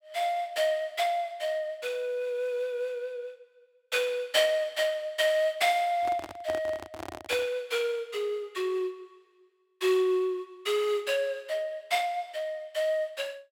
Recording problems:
microphone handling noise; from 6 to 7.5 s; peak -5 dB vs average level

